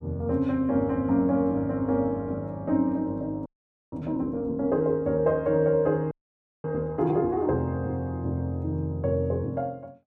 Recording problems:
audio freezing; at 3.5 s and at 6 s for 0.5 s

